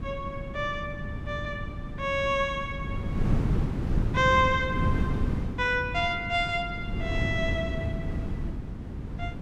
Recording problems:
hum; 50 Hz, harmonics up to 650 Hz, SNR 17 dB
wind on the microphone; below 200 Hz, SNR 4 dB

